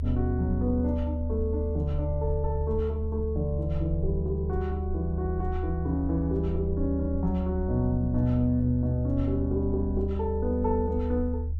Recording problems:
low-frequency rumble; below 78 Hz, strongest tone 76 Hz, SNR 2 dB

